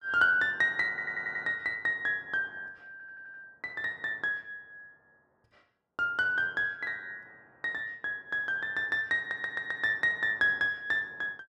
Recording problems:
stutter; at 1 s, at 3 s and at 9 s

